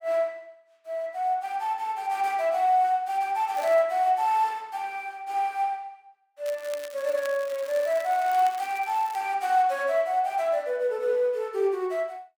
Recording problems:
crackle; at 3.5 s and from 6.5 to 9 s; loose cable, SNR 20 dB

